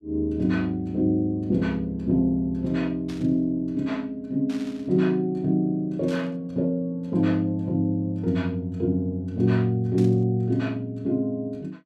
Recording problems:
static burst; 4 times, first at 3 s; peak -14 dB vs average level

